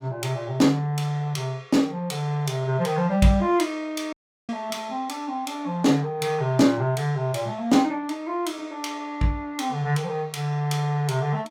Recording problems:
audio cutting out; at 4 s

